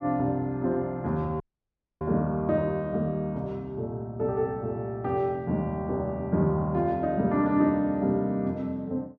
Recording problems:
dropout; at 1.5 s for 0.5 s

